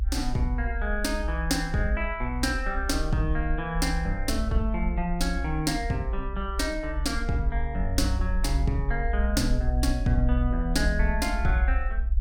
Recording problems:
low-frequency rumble; below 60 Hz, SNR 2 dB

